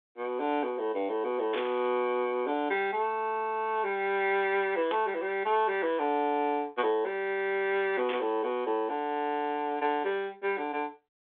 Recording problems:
phone line; 220 Hz to 3.7 kHz, G.726
static burst; at 1.5 s, at 5 s and at 8 s; peak -3 dB vs average level

